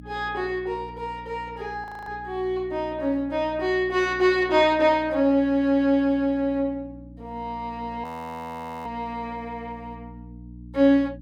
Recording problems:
hum; 60 Hz, harmonics up to 300 Hz, SNR 20 dB
audio freezing; at 2 s and at 8 s for 1 s

